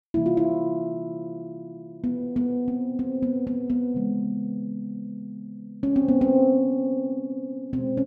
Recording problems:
none

